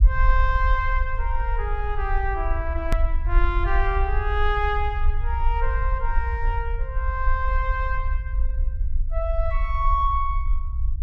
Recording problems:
low-frequency rumble; below 54 Hz, SNR -1 dB
edit click; at 3 s

